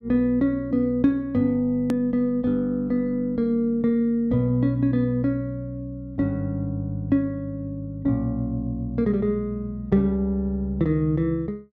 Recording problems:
click at an edit; at 2 s

